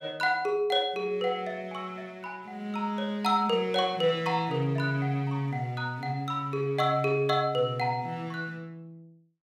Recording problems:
none

